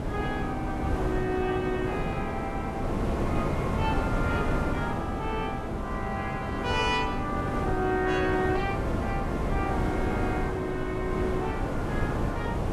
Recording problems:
wind on the microphone; below 490 Hz, SNR 0 dB

